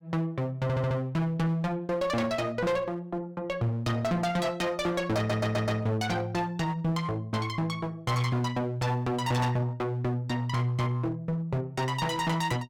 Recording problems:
distorted audio; hard clipping, uneven, signal-to-distortion ratio 6 dB
stutter; at 0.5 s and at 5 s

